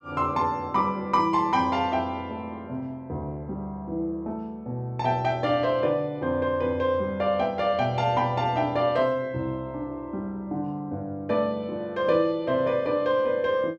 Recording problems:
none

